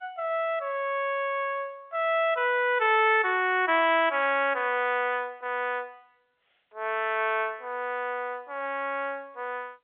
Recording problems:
telephone audio; 320 Hz to 3.6 kHz, G.711

